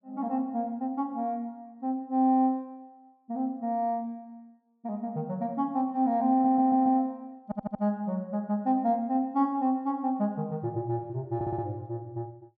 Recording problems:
stutter; at 6.5 s, at 7.5 s and at 11 s

